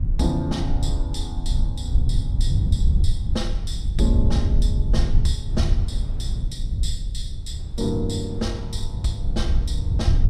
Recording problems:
rumble; below 80 Hz, SNR -5 dB
wind noise; below 190 Hz, SNR 17 dB

